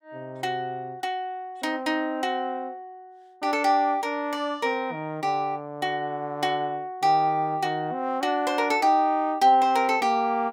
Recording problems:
none

